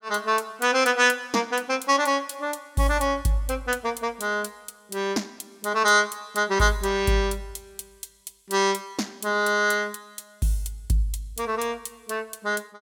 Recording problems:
none

